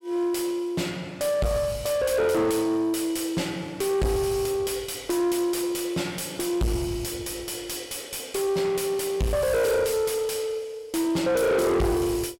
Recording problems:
distortion; soft clipping, signal-to-distortion ratio 5 dB

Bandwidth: 16.5 kHz